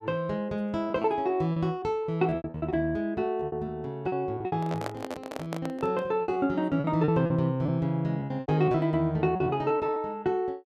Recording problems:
lost packets; 12% of the sound replaced, filled with repeated pitch periods
handling noise; from 4.5 to 6 s; peak -2 dB vs average level

